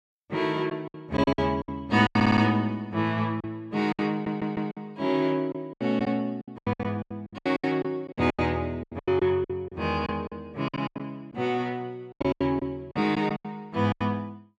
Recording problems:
packet loss; 16% of the sound replaced, filled with silence
audio stuttering; at 2 s and at 4 s

